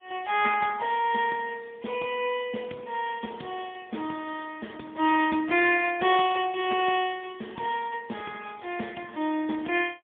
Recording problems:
phone line; 190 Hz to 3.4 kHz, AMR-NB, then MP3

